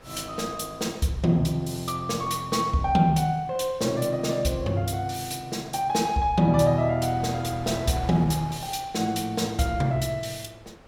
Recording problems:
wind on the microphone; below 1 kHz, SNR 22 dB

